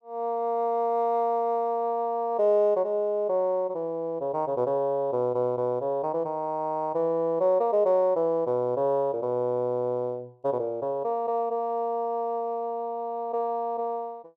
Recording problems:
none

